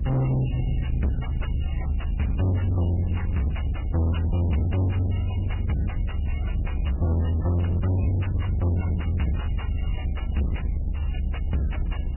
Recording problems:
codec artefacts; MP3, then Vorbis, log-spectral distance 4 dB, nothing above 2.9 kHz
distorted audio; soft clipping, signal-to-distortion ratio 6 dB
rumble; below 90 Hz, SNR 3 dB
wind on the microphone; below 250 Hz, SNR 16 dB

